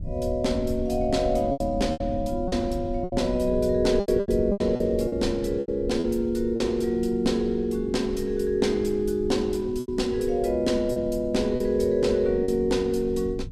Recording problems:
rumble; below 110 Hz, SNR 12 dB
lost packets; 7% of the sound replaced, filled with repeated pitch periods

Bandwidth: 15.5 kHz